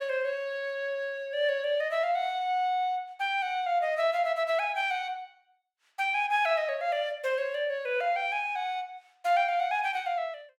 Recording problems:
none

